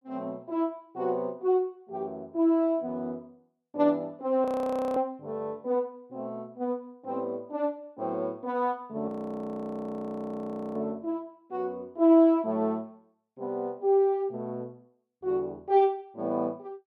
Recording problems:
audio freezing; at 4.5 s for 0.5 s and at 9 s for 1.5 s

